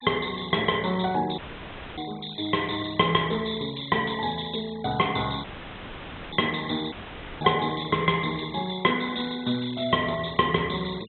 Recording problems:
treble cut off; nothing above 3.8 kHz
noise reduction artefacts; signal-to-artefact ratio 20 dB
dropout; at 1.5 s for 0.5 s, at 5.5 s for 1 s and at 7 s; filled with static

